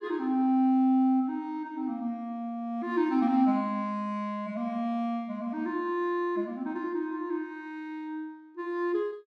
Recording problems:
none

